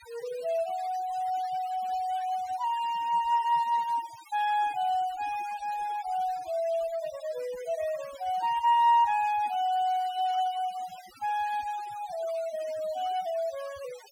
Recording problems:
denoising artefacts; signal-to-artefact ratio 20 dB

